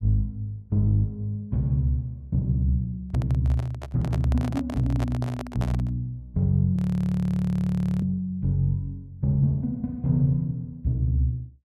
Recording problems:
handling noise; from 3 to 6 s; peak -5 dB vs average level
frozen audio; at 7 s for 1.5 s

